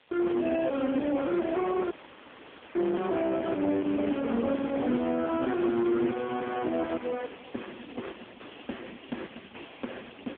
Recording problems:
phone line; 150 Hz to 3.4 kHz, AMR-NB
distorted audio; soft clipping, signal-to-distortion ratio 3 dB
background hiss; SNR 30 dB
dropout; at 2 s for 1 s
crackle; from 4.5 to 6 s and from 7 to 9.5 s; loose cable, SNR 28 dB

